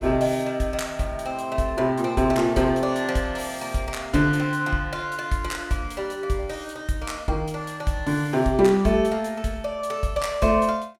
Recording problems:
none

